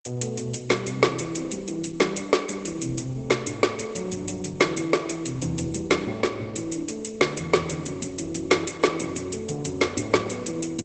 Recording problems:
lossy compression; Opus, log-spectral distance 8 dB, nothing above 8.2 kHz

